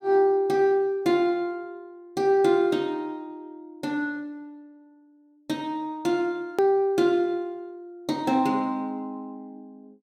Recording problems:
click at an edit; at 6.5 s

